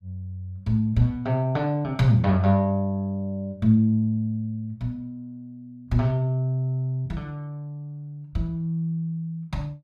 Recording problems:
none

